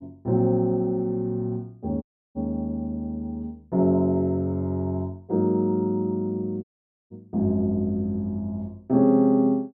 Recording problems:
audio cutting out; at 2 s and at 6.5 s

